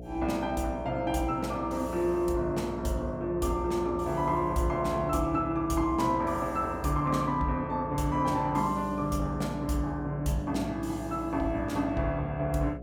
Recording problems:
hum; 60 Hz, harmonics up to 720 Hz, SNR 12 dB

